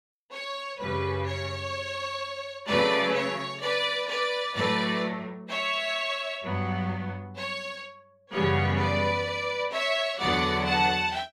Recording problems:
none

